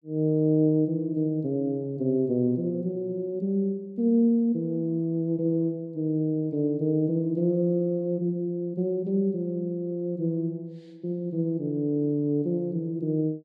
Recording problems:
none

